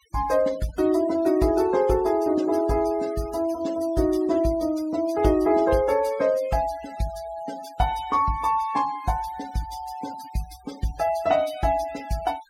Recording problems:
denoising artefacts; signal-to-artefact ratio 21 dB

